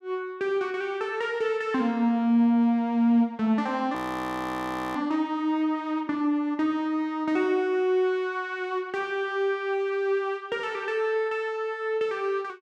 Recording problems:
frozen audio; at 4 s for 1 s

